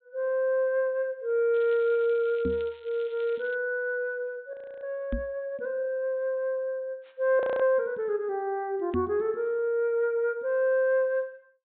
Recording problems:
treble missing; nothing above 4 kHz
crackle; from 1.5 to 3.5 s; loose cable, SNR 27 dB
knock on the microphone; at 2.5 s, at 5 s and at 9 s; peak 0 dB vs average level
audio freezing; at 4.5 s and at 7.5 s

